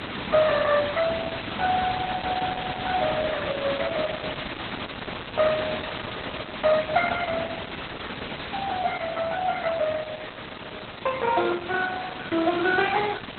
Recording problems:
lossy compression; Opus, log-spectral distance 17 dB, nothing above 4 kHz
hiss; SNR 7 dB

